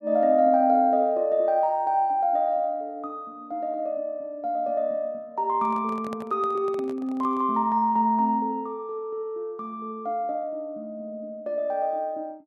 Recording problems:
handling noise; from 5.5 to 7.5 s; peak -9 dB vs average level

